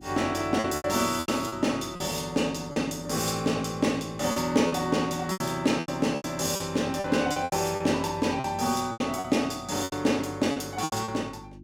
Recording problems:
electrical hum; 50 Hz, harmonics up to 350 Hz, SNR 22 dB
lost packets; 11% of the sound replaced, filled with repeated pitch periods

